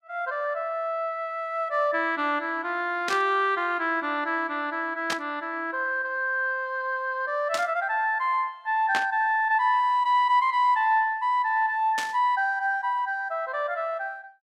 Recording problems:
static burst; 5 times, first at 3 s; peak 0 dB vs average level

